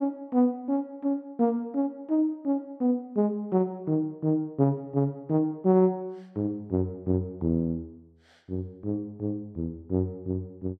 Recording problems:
none

